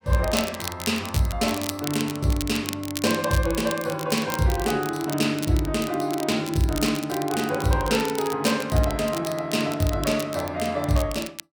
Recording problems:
crackling; vinyl, SNR 11 dB

